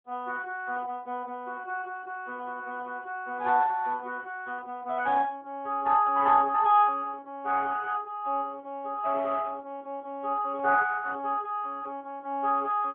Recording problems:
telephone audio; 300 Hz to 3.5 kHz, AMR-NB

